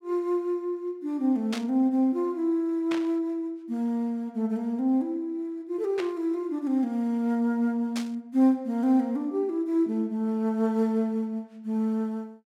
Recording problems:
static burst; 4 times, first at 1.5 s; peak -4 dB vs average level

